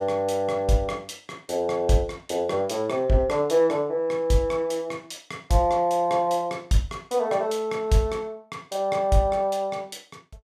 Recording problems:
none

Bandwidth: 14.5 kHz